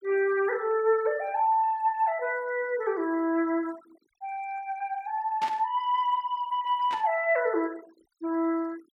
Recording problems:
noise reduction artefacts; signal-to-artefact ratio 24 dB
burst of static; at 5.5 s and at 7 s; peak -6 dB vs average level

